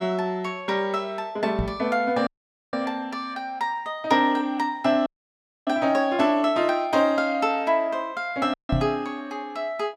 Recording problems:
knock on the microphone; at 1.5 s and at 8.5 s; peak +3 dB vs average level
audio cutting out; at 2.5 s, at 5 s for 0.5 s and at 8.5 s

